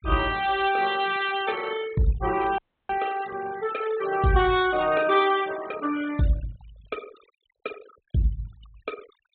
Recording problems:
low-pass filter; nothing above 4 kHz
noise reduction artefacts; signal-to-artefact ratio 17 dB
audio cutting out; at 2.5 s

